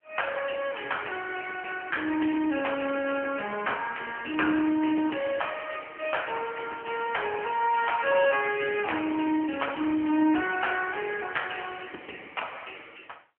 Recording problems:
telephone audio; 220 Hz to 3.1 kHz, AMR-NB

